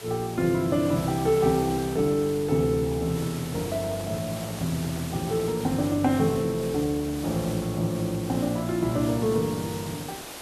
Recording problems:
hiss; slope -3 dB per octave, SNR 13 dB
handling noise; from 3.5 to 5.5 s; peak -11 dB vs average level

